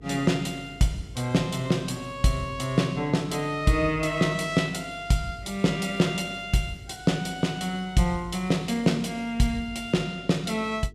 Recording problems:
electrical hum; 50 Hz, harmonics up to 450 Hz, SNR 23 dB

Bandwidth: 14.5 kHz